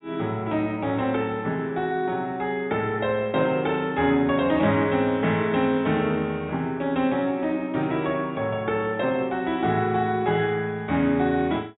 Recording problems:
treble cut off; nothing above 4 kHz

